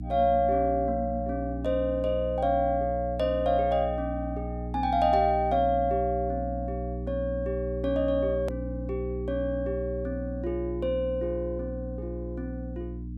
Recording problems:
hum; 60 Hz, harmonics up to 300 Hz, SNR 7 dB
hard cut with a click; at 8.5 s

